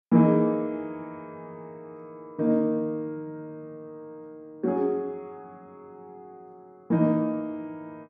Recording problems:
none

